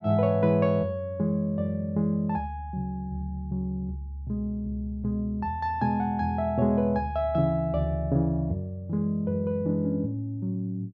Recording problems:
none

